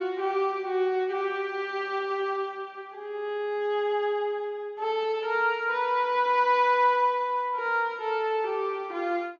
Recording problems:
treble cut off; nothing above 8 kHz

